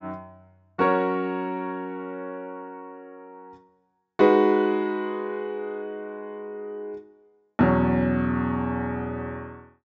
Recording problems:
treble cut off; nothing above 8 kHz

